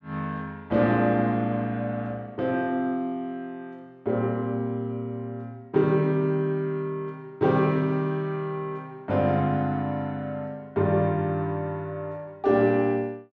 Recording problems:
none

